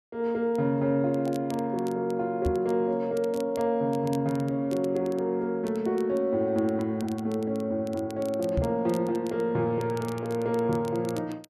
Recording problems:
crackling; vinyl, SNR 23 dB
microphone bump; at 2.5 s and at 8.5 s; peak +3 dB vs average level

